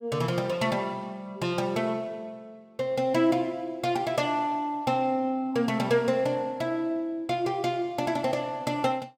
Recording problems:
none

